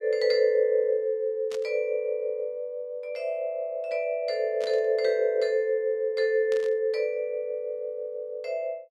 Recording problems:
static burst; at 1.5 s, at 4.5 s and at 6.5 s; peak -11 dB vs average level

